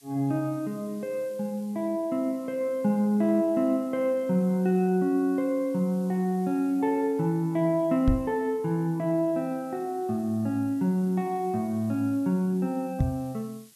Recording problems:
background hiss; slope +3 dB per octave, SNR 28 dB
microphone thump; at 8 s and at 13 s; peak +6 dB vs average level

